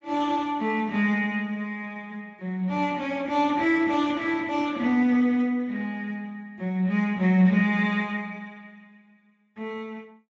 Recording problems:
codec artefacts; Speex, log-spectral distance 3 dB

